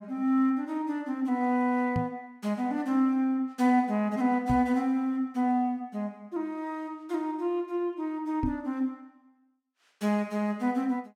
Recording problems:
microphone bump; at 2 s, at 4.5 s and at 8.5 s; peak +2 dB vs average level

